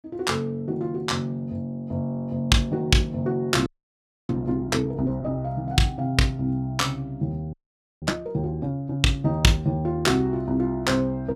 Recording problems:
audio freezing; at 3.5 s for 0.5 s and at 7.5 s

